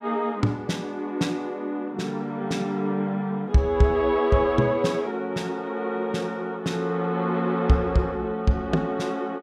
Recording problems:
none

